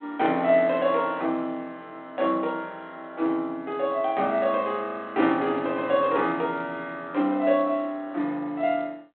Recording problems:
telephone audio; 240 Hz to 4 kHz, G.726

